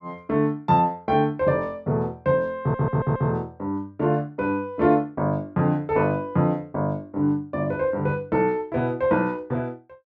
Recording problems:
audio stuttering; at 2.5 s

